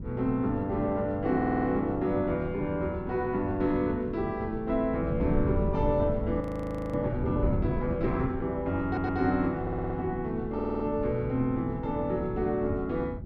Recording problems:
wind on the microphone; below 180 Hz, SNR 7 dB
stutter; 4 times, first at 1.5 s
audio freezing; at 6.5 s for 0.5 s

